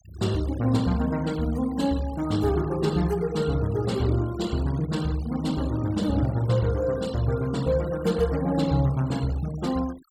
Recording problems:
denoising artefacts; signal-to-artefact ratio 20 dB

